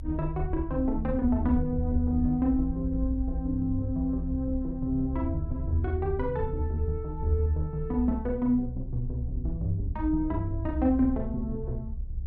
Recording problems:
low-frequency rumble; below 68 Hz, strongest tone 28 Hz, SNR 8 dB

